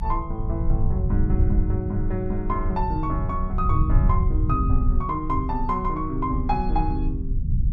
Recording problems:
low-frequency rumble; below 94 Hz, SNR -2 dB

